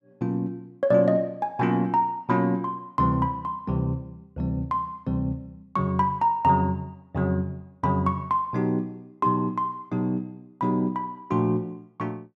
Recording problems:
none

